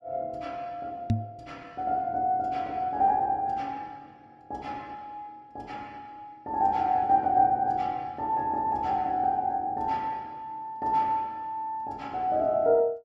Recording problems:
knock on the microphone; at 1 s; peak +6 dB vs average level

